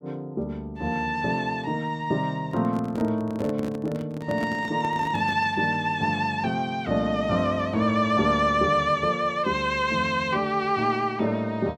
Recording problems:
handling noise; from 2.5 to 5.5 s; peak -5 dB vs average level

